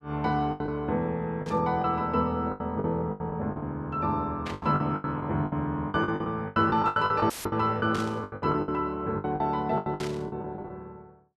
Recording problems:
packet loss; 16% of the sound replaced, filled with the last packet
static burst; 4 times, first at 1.5 s; peak -5 dB vs average level
audio cutting out; at 7.5 s; filled with static

